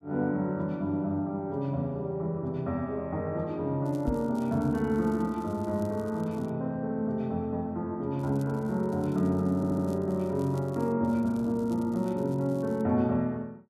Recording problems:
crackling; from 4 to 6.5 s, from 8 to 11 s and from 11 to 13 s; loose cable, SNR 28 dB
microphone thump; at 4 s; peak +1 dB vs average level
audio stuttering; at 9.5 s

